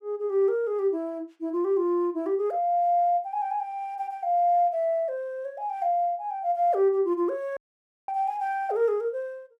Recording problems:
audio cutting out; at 7.5 s for 0.5 s

